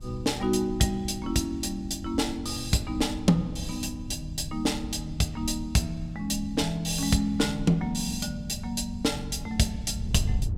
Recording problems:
wind noise; below 98 Hz, SNR 12 dB

